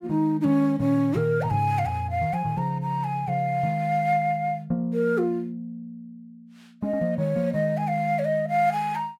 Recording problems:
none

